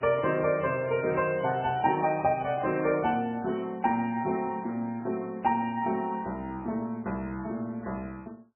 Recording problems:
lossy codec; MP3, log-spectral distance 2 dB, nothing above 2.7 kHz

